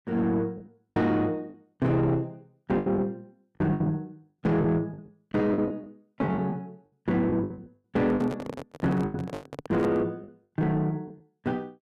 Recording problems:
distortion; soft clipping, signal-to-distortion ratio 11 dB
lost packets; 10% of the sound replaced, filled with the last packet
microphone handling noise; from 8 to 10 s; peak -2 dB vs average level

